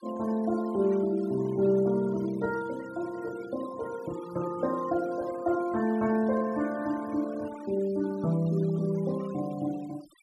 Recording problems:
denoising artefacts; signal-to-artefact ratio 20 dB

